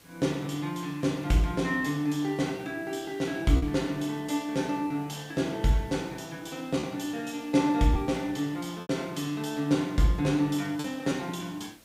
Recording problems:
hiss; slope -2 dB per octave, SNR 26 dB
packet loss; 2% of the sound replaced, filled with repeated pitch periods

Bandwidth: 15.5 kHz